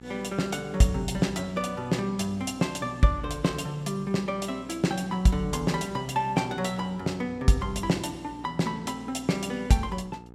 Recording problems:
hum; 60 Hz, harmonics up to 1.4 kHz, SNR 20 dB

